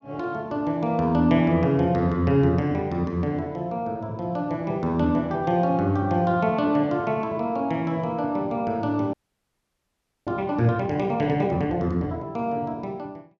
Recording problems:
frozen audio; at 9 s for 1 s

